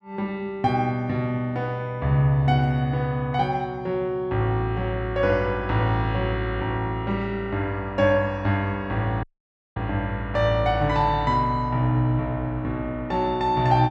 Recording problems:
dropout; at 9 s for 0.5 s

